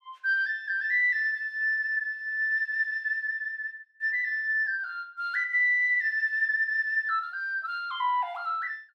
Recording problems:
none

